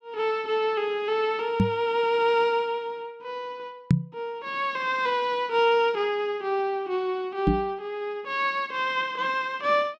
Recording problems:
microphone bump; at 1.5 s, at 4 s and at 7.5 s; peak +9 dB vs average level

